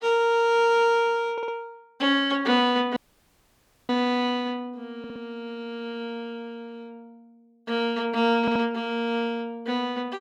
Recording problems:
audio stuttering; at 1.5 s, at 5 s and at 8.5 s
audio cutting out; at 3 s for 1 s

